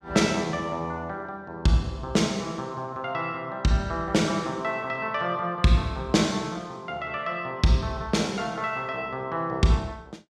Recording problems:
none

